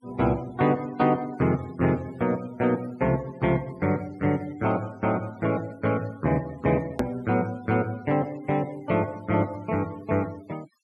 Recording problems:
denoising artefacts; signal-to-artefact ratio 23 dB
edit click; at 7 s

